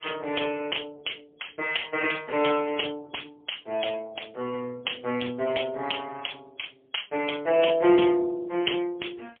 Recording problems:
telephone audio; 260 Hz to 3.3 kHz, AMR-NB, then MP3

